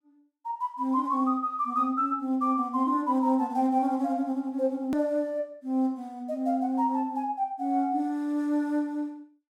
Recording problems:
click at an edit; at 5 s

